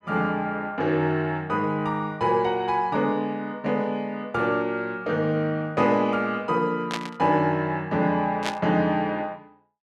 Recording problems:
static burst; at 7 s and at 8.5 s; peak 0 dB vs average level

